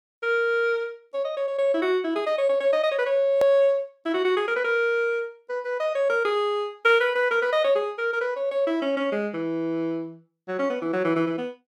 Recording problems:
hard cut with a click; at 3.5 s

